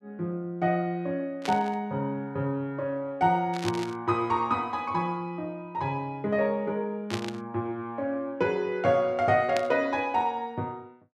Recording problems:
static burst; 4 times, first at 1.5 s; peak -1 dB vs average level

